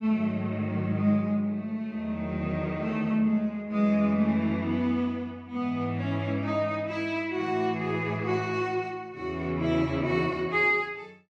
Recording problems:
none

